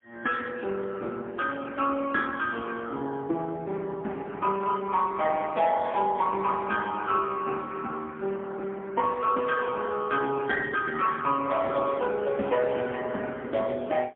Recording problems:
telephone audio; 240 Hz to 3.3 kHz, AMR-NB, then MP3

